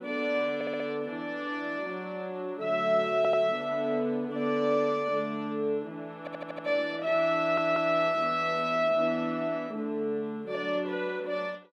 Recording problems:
audio stuttering; 4 times, first at 0.5 s

